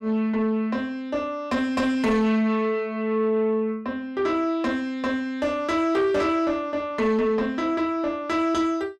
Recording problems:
distortion; soft clipping, signal-to-distortion ratio 10 dB

